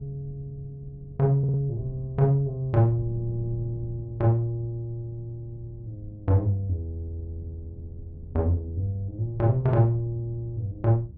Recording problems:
wind on the microphone; below 140 Hz, SNR 17 dB
audio stuttering; at 1.5 s and at 3 s

